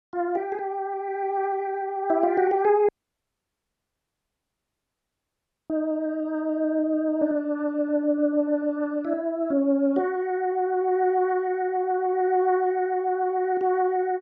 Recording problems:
audio cutting out; at 3 s for 3 s

